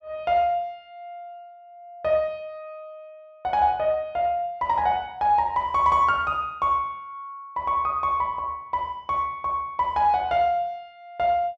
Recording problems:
none

